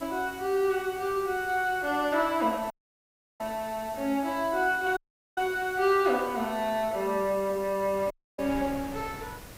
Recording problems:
background hiss; slope +4 dB per octave, SNR 20 dB
wind noise; below 1.1 kHz, SNR 21 dB
dropout; at 2.5 s for 0.5 s, at 5 s and at 8 s

